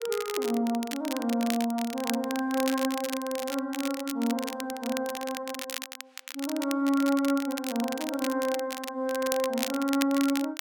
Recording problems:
crackling; vinyl, SNR 8 dB

